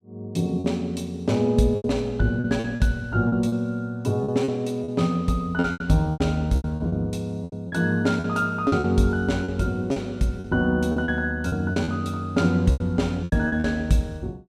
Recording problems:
packet loss; 11% of the sound replaced, filled with repeated pitch periods

